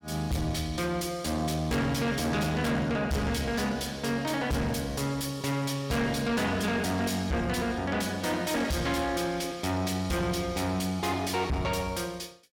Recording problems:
distorted audio; soft clipping, signal-to-distortion ratio 7 dB

